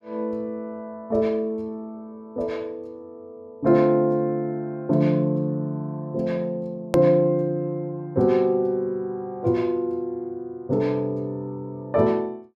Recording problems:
click at an edit; at 7 s

